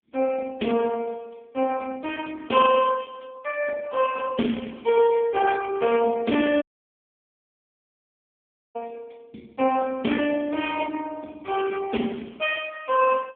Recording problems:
telephone audio; 240 Hz to 3.2 kHz, AMR-NB
dropout; at 6.5 s for 2 s

